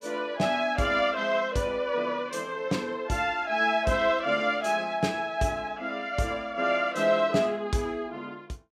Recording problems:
none

